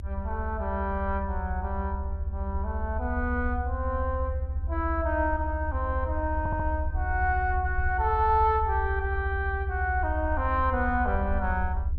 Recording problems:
rumble; below 76 Hz, SNR 2 dB
stutter; at 6.5 s

